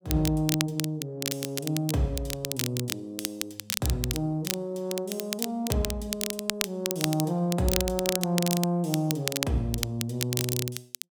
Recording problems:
crackle; vinyl, SNR 3 dB

